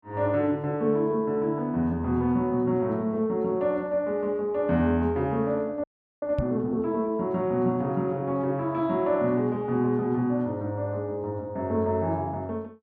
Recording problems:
audio freezing; at 6 s
knock on the microphone; at 6.5 s; peak +2 dB vs average level

